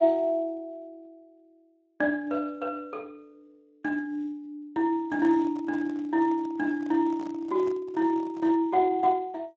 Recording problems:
codec artefacts; Speex, log-spectral distance 2 dB
microphone handling noise; from 5 to 8.5 s; peak -13 dB vs average level

